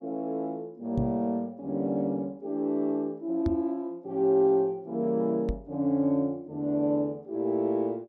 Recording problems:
knock on the microphone; at 1 s, at 3.5 s and at 5.5 s; peak +2 dB vs average level

